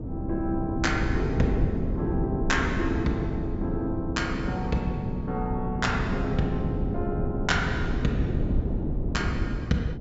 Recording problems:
treble cut off; nothing above 8 kHz
wind noise; below 240 Hz, SNR 1 dB

